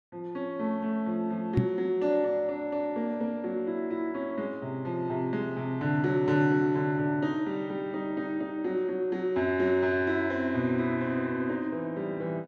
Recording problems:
microphone thump; at 1.5 s; peak +8 dB vs average level

